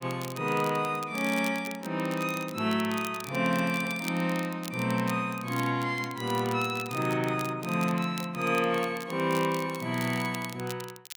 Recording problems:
crackling; vinyl, SNR 15 dB

